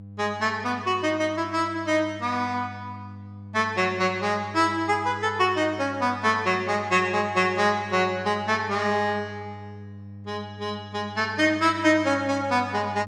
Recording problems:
hum; 50 Hz, harmonics up to 500 Hz, SNR 17 dB

